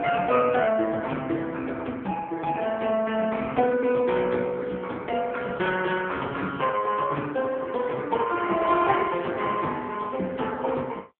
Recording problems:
phone line; 240 Hz to 3 kHz, AMR-NB

